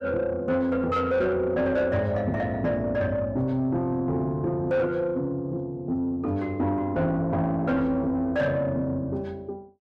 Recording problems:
distortion; soft clipping, signal-to-distortion ratio 10 dB

